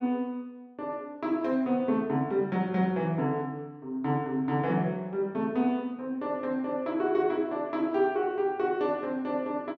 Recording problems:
none

